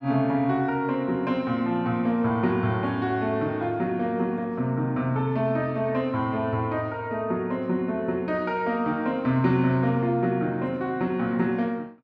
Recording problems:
none

